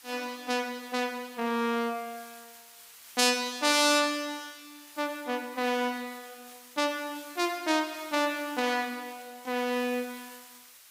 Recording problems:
hiss; slope +3 dB per octave, SNR 20 dB

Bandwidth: 15.5 kHz